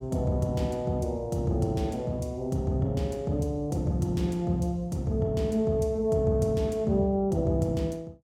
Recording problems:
none

